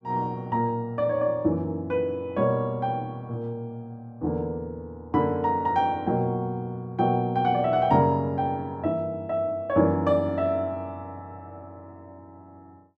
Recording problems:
none

